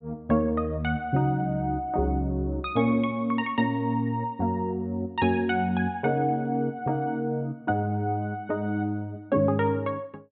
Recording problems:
low-pass filter; nothing above 4 kHz

